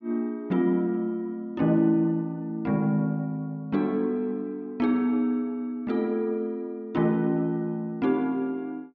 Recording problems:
none

